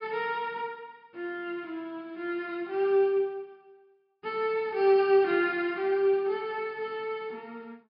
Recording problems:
treble missing; nothing above 5.5 kHz

